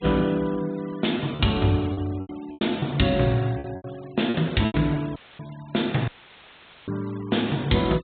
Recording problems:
low-pass filter; nothing above 4 kHz
noise reduction artefacts; signal-to-artefact ratio 21 dB
lost packets; 7% of the sound replaced, filled with repeated pitch periods
dropout; at 5 s and at 6 s for 1 s; filled with static

